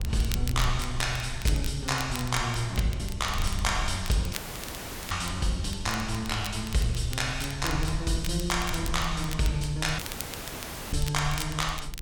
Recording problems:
rumble; below 78 Hz, SNR 8 dB
crackle; vinyl, SNR 12 dB
audio cutting out; at 4.5 s for 1 s and at 10 s for 1 s

